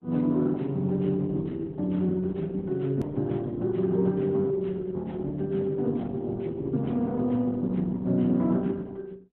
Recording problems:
codec artefacts; Opus, log-spectral distance 2 dB, nothing above 13.1 kHz
edit click; at 3 s

